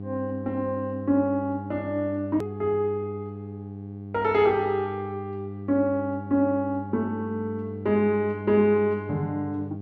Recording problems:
hum; 50 Hz, harmonics up to 800 Hz, SNR 11 dB
click at an edit; at 2.5 s

